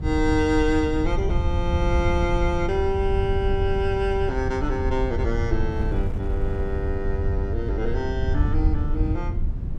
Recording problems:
rumble; below 88 Hz, SNR 1 dB
wind noise; below 200 Hz, SNR 17 dB

